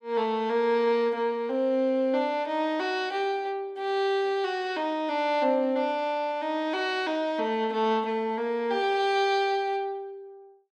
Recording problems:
none

